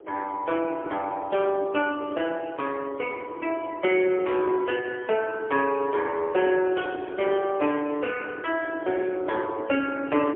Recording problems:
telephone audio; 280 Hz to 3.3 kHz, AMR-NB, then MP3
wind on the microphone; below 490 Hz, SNR 12 dB

